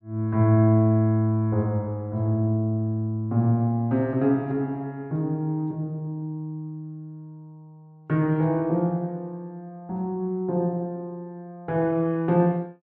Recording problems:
none

